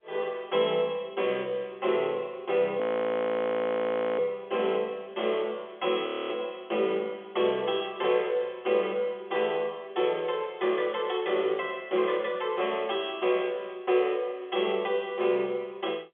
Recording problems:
phone line; 240 Hz to 3.4 kHz, G.711
audio freezing; at 3 s for 1.5 s and at 6 s

